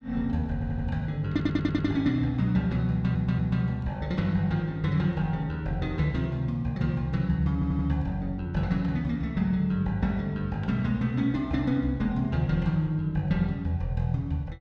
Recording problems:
stutter; 4 times, first at 0.5 s

